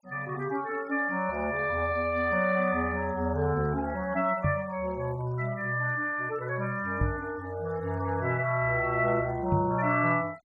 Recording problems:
denoising artefacts; signal-to-artefact ratio 25 dB
microphone thump; at 4.5 s, at 7 s and at 9.5 s; peak +5 dB vs average level

